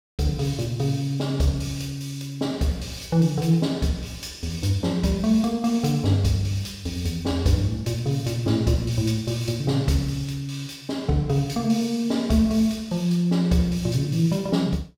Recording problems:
none

